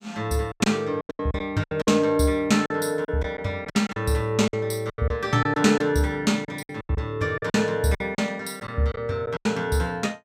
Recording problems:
lost packets; 13% of the sound replaced, filled with silence

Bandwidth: 15.5 kHz